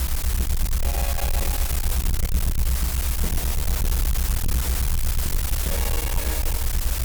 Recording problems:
distorted audio; hard clipping, signal-to-distortion ratio 8 dB
hiss; slope -1 dB per octave, SNR -9 dB
low-frequency rumble; below 66 Hz, SNR -11 dB

